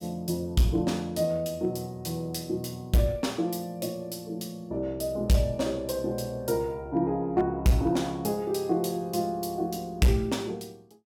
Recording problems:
distortion; hard clipping, uneven, signal-to-distortion ratio 11 dB

